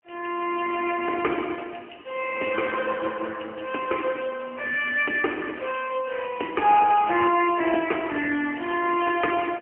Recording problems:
telephone audio; 260 Hz to 2.9 kHz, AMR-NB, then MP3

